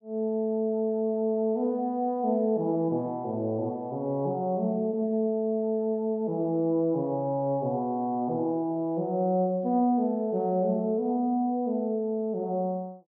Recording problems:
treble missing; nothing above 5.5 kHz

